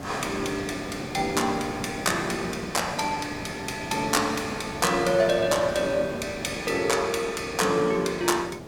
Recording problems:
background hiss; slope -8 dB per octave, SNR 11 dB

